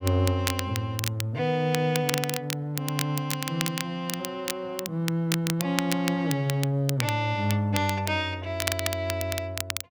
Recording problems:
crackling; vinyl, SNR 5 dB

